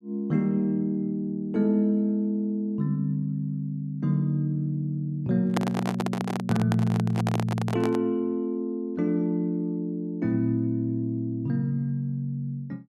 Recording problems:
handling noise; from 5.5 to 8 s; peak +3 dB vs average level

